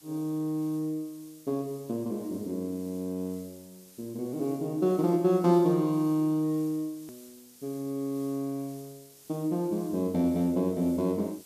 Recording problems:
background hiss; SNR 23 dB
click at an edit; at 7 s

